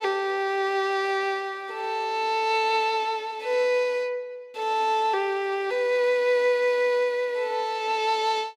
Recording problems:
none

